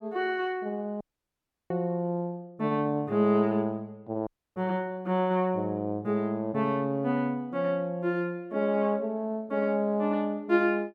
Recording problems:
audio cutting out; at 1 s for 0.5 s and at 4.5 s

